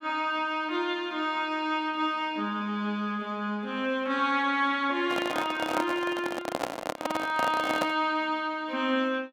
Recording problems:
microphone handling noise; from 5 to 8 s; peak +3 dB vs average level

